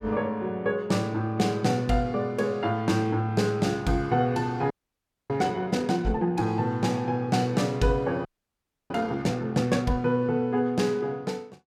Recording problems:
audio freezing; at 4.5 s for 0.5 s and at 8.5 s for 0.5 s

